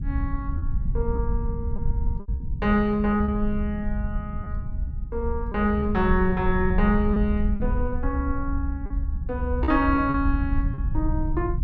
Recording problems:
rumble; below 70 Hz, SNR 3 dB
lost packets; 5% of the sound replaced, filled with repeated pitch periods

